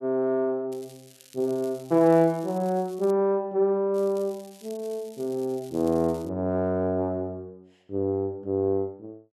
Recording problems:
crackle; from 0.5 to 3 s and from 4 to 6.5 s; loose cable, SNR 25 dB

